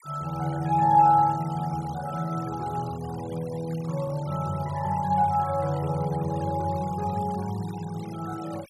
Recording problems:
denoising artefacts; signal-to-artefact ratio 20 dB

